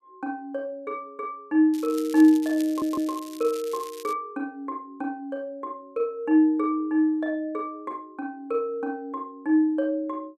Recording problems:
crackling; from 1.5 to 4 s; loose cable, SNR 18 dB
stutter; at 2.5 s

